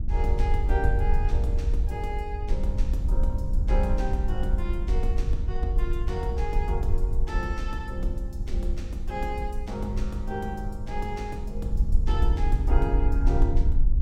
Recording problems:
wind noise; below 58 Hz, SNR -5 dB

